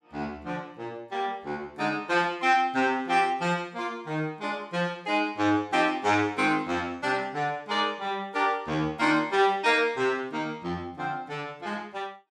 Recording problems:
none

